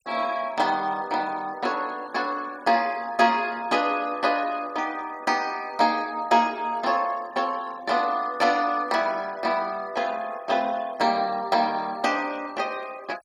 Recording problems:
noise reduction artefacts; signal-to-artefact ratio 23 dB

